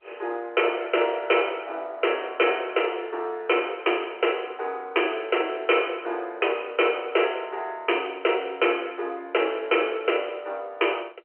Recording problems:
phone line; 300 Hz to 3.1 kHz, G.711
distorted audio; hard clipping, uneven, signal-to-distortion ratio 12 dB

